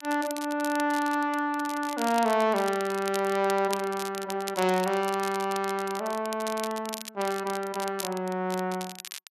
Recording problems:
crackle; vinyl, SNR 12 dB

